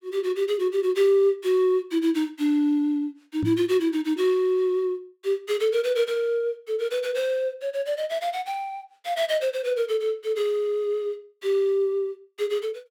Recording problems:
microphone bump; at 3.5 s; peak 0 dB vs average level

